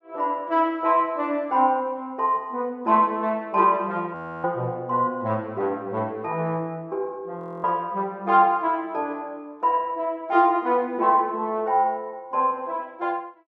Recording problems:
audio freezing; at 4 s and at 7.5 s

